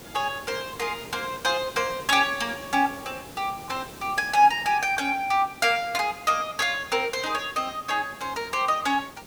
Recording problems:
background hiss; SNR 18 dB

